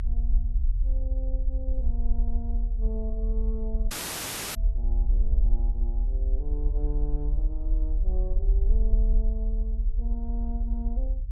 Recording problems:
low-frequency rumble; below 48 Hz, strongest tone 38 Hz, SNR -13 dB
audio cutting out; at 4 s for 0.5 s

